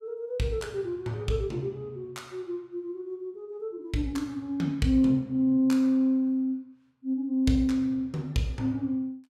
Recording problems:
none

